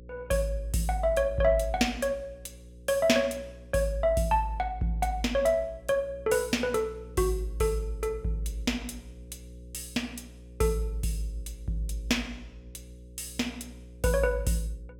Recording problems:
hum; 60 Hz, harmonics up to 540 Hz, SNR 18 dB

